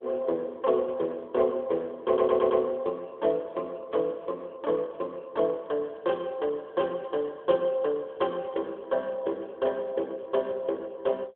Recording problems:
phone line; 260 Hz to 3.4 kHz, AMR-NB
stutter; at 2 s

